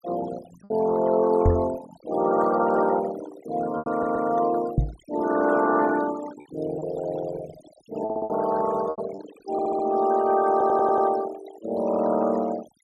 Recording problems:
denoising artefacts; signal-to-artefact ratio 15 dB
packet loss; 3% of the sound replaced, filled with repeated pitch periods
knock on the microphone; at 1.5 s and at 5 s; peak +6 dB vs average level
stutter; 4 times, first at 4 s

